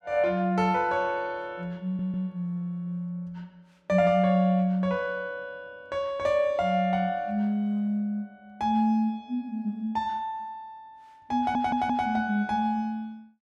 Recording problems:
audio stuttering; at 2 s and at 11 s

